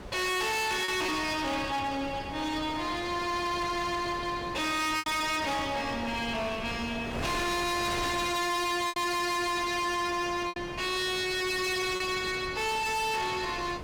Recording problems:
distorted audio; hard clipping, uneven, signal-to-distortion ratio 7 dB
wind noise; below 1.4 kHz, SNR 11 dB
packet loss; 2% of the sound replaced, filled with repeated pitch periods

